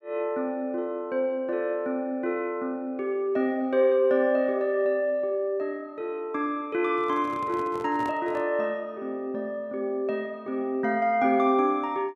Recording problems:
microphone handling noise; from 7 to 8.5 s; peak -8 dB vs average level

